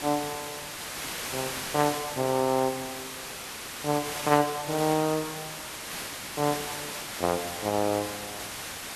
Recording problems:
background hiss; slope -1 dB per octave, SNR 6 dB

